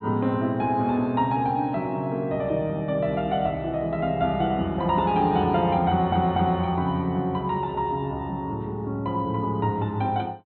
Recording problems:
treble missing; nothing above 4.1 kHz
audio stuttering; at 6 s

